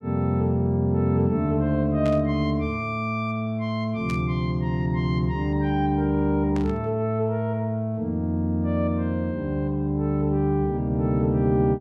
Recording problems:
burst of static; at 2 s, at 4 s and at 6.5 s; peak -11 dB vs average level

